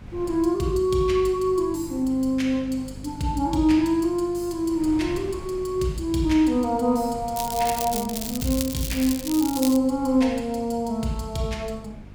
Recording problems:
hum; 50 Hz, harmonics up to 550 Hz, SNR 20 dB
wind on the microphone; below 230 Hz, SNR 20 dB
crackling; from 7.5 to 10 s; loose cable, SNR 8 dB

